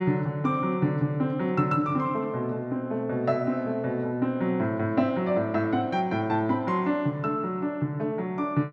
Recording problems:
none

